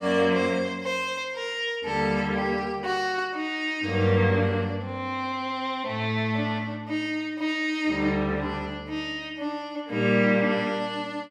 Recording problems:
none

